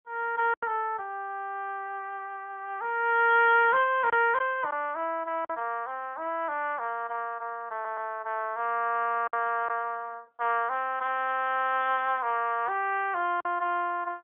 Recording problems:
telephone audio; 280 Hz to 3.4 kHz, AMR-NB
lost packets; 1.9% of the sound replaced, filled with silence
audio stuttering; at 7.5 s

